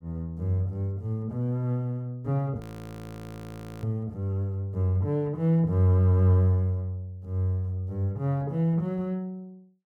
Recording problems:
frozen audio; at 2.5 s for 1 s

